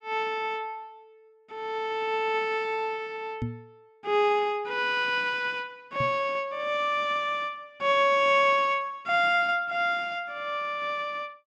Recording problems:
knock on the microphone; at 3.5 s and at 6 s; peak -2 dB vs average level

